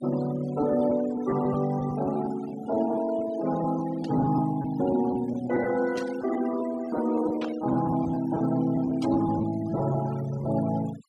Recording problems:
denoising artefacts; signal-to-artefact ratio 15 dB
lost packets; 7% of the sound replaced, filled with repeated pitch periods
static burst; 4 times, first at 4 s; peak -9 dB vs average level

